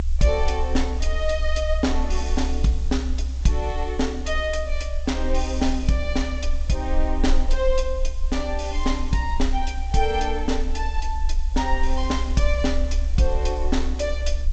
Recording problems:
lossy codec; G.722, log-spectral distance 2 dB, nothing above 7.3 kHz
hiss; slope +1 dB per octave, SNR 24 dB
low-frequency rumble; below 64 Hz, strongest tone 22 Hz, SNR 2 dB

